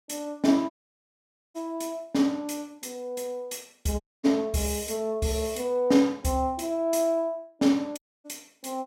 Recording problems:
dropout; at 0.5 s for 1 s, at 4 s and at 8 s

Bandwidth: 16 kHz